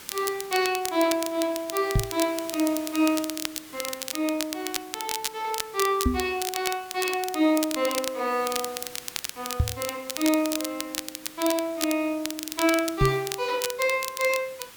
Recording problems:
hiss; SNR 17 dB
crackling; vinyl, SNR 6 dB
microphone bump; 4 times, first at 2 s; peak +7 dB vs average level

